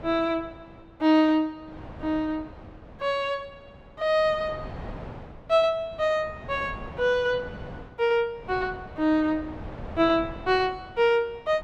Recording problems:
wind noise; below 650 Hz, SNR 17 dB

